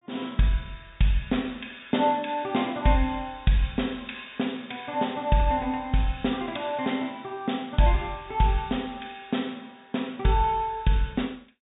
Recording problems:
treble cut off; nothing above 4 kHz

